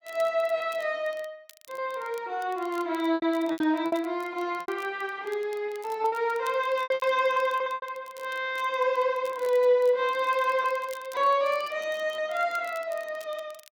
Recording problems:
crackle; vinyl, SNR 25 dB
packet loss; 7% of the sound replaced, filled with repeated pitch periods

